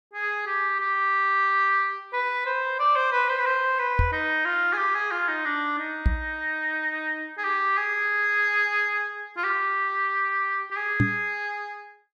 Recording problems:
microphone thump; at 4 s, at 6 s and at 11 s; peak +5 dB vs average level

